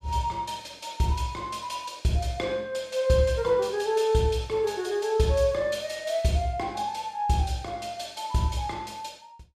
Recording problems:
none

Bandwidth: 14 kHz